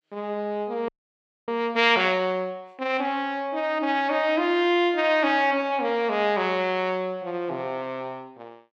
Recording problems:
audio freezing; at 1 s for 0.5 s

